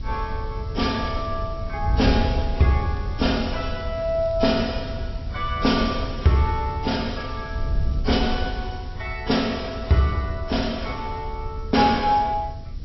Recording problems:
treble cut off; nothing above 5.5 kHz
lossy compression; AAC, log-spectral distance 2 dB
hiss; SNR 27 dB
wind on the microphone; below 92 Hz, SNR 7 dB
crackling; from 2.5 to 4.5 s, at 5.5 s and from 6 to 8 s; loose cable, SNR 29 dB

